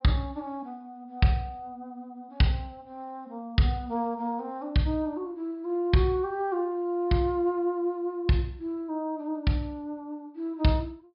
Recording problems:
low-pass filter; nothing above 5.5 kHz

